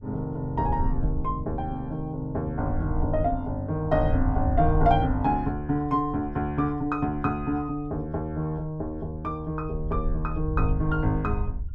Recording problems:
wind on the microphone; below 70 Hz, SNR 6 dB

